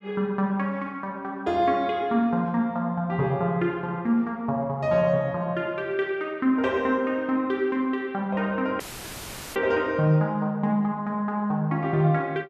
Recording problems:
audio cutting out; at 9 s for 1 s; filled with static

